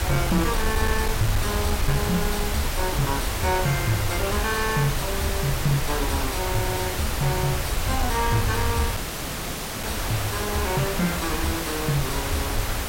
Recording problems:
distortion; soft clipping, signal-to-distortion ratio 6 dB
hiss; slope -4 dB per octave, SNR 1 dB
rumble; below 910 Hz, SNR 3 dB
audio cutting out; at 9 s for 1 s

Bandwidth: 16 kHz